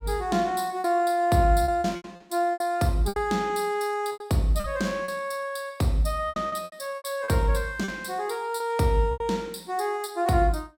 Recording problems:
packet loss; 10% of the sound replaced, filled with repeated pitch periods

